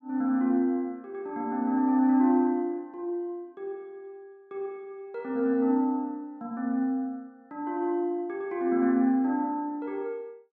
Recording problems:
none

